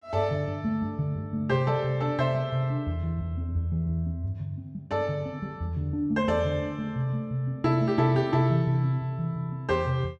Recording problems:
none

